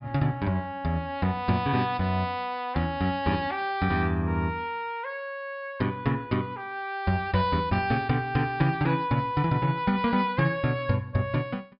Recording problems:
low-pass filter; nothing above 5.5 kHz

